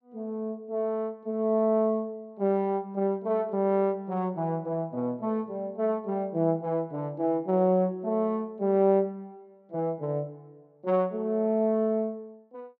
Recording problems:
none

